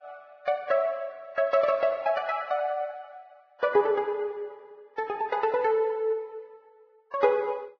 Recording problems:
codec artefacts; Vorbis, log-spectral distance 2 dB, nothing above 6.2 kHz

